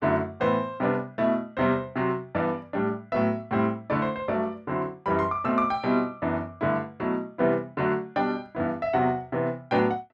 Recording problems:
none

